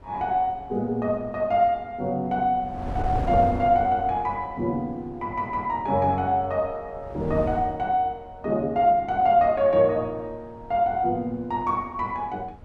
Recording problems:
wind on the microphone; below 330 Hz, SNR 15 dB

